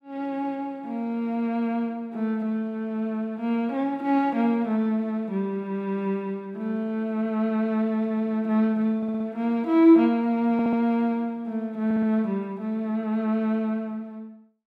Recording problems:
audio stuttering; at 9 s, at 11 s and at 12 s

